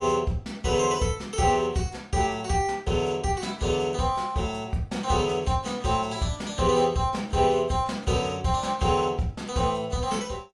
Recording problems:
codec artefacts; AAC, log-spectral distance 2 dB

